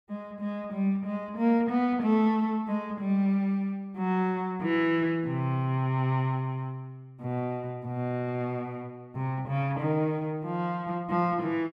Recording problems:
none

